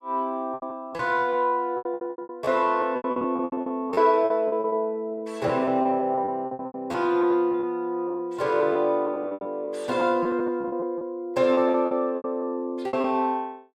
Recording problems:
packet loss; 17% of the sound replaced, filled with repeated pitch periods

